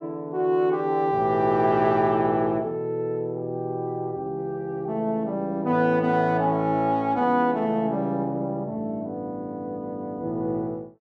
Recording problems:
none

